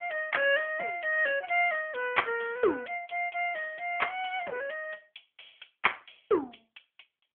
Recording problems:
phone line; 280 Hz to 3.3 kHz, AMR-NB

